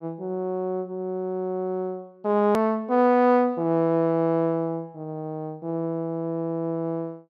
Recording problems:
edit click; at 2.5 s

